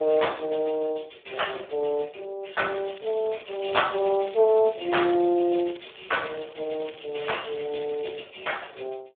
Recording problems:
phone line; 300 Hz to 3.6 kHz, Speex
crackling; from 2.5 to 8 s; loose cable, SNR 20 dB

